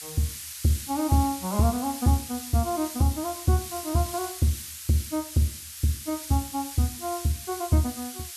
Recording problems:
hiss; slope +7 dB per octave, SNR 9 dB

